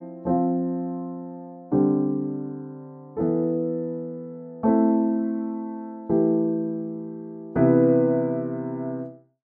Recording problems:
none

